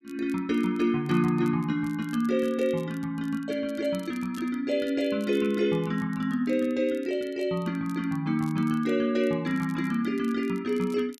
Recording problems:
crackling; vinyl, SNR 27 dB

